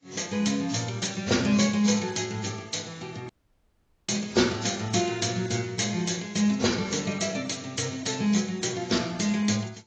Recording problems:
lossy compression; AAC, log-spectral distance 8 dB, nothing above 7.3 kHz
audio cutting out; at 3.5 s for 1 s

